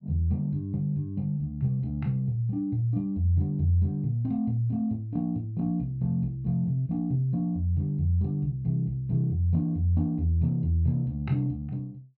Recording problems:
none

